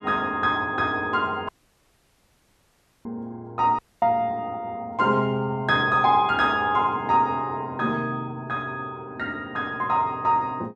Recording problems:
audio cutting out; at 1.5 s for 1.5 s and at 4 s

